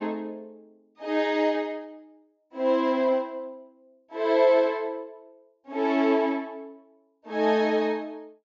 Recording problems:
treble cut off; nothing above 7.5 kHz

